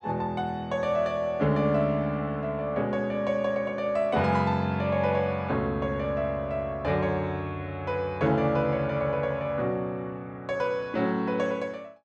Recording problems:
none

